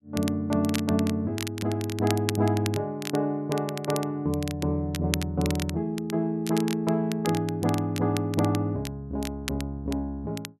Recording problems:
crackle; vinyl, SNR 11 dB

